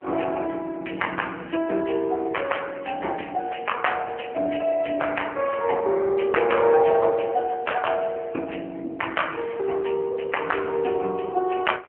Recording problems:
phone line; 300 Hz to 3.2 kHz, AMR-NB

